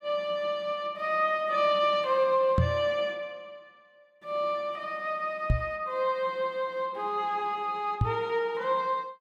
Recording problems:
knock on the microphone; at 2.5 s, at 5.5 s and at 8 s; peak +7 dB vs average level

